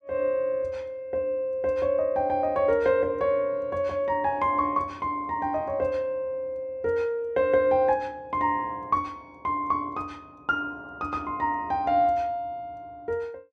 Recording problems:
none

